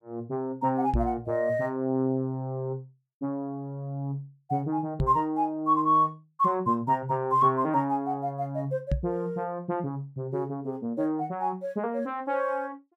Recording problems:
microphone thump; at 1 s, at 5 s and at 9 s; peak +4 dB vs average level

